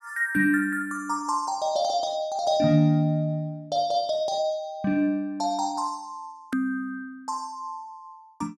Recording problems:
hard cut with a click; at 6.5 s

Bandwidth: 14.5 kHz